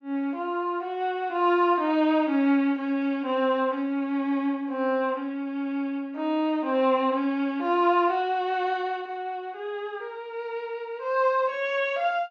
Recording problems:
treble missing; nothing above 8 kHz

